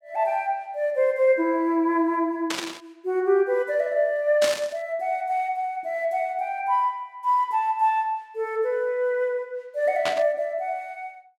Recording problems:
static burst; at 2.5 s, at 4.5 s and at 10 s; peak +1 dB vs average level

